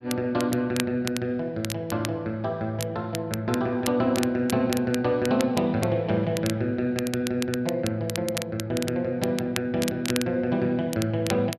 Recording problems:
crackling; vinyl, SNR 10 dB

